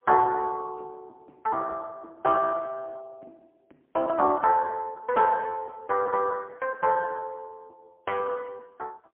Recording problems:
telephone audio; 170 Hz to 2 kHz, AMR-NB, then MP3

